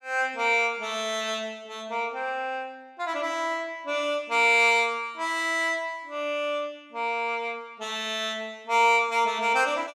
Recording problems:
none

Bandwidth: 15.5 kHz